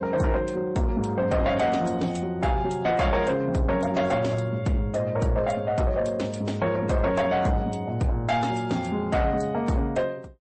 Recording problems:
codec artefacts; MP3, then MP3, log-spectral distance 2 dB, nothing above 8.2 kHz
distorted audio; soft clipping, signal-to-distortion ratio 10 dB

